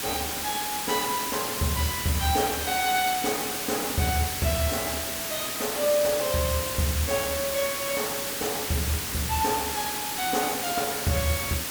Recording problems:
background hiss; slope -1 dB per octave, SNR 1 dB

